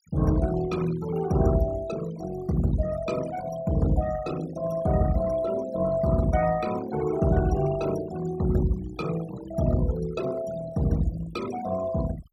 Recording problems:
noise reduction artefacts; signal-to-artefact ratio 15 dB

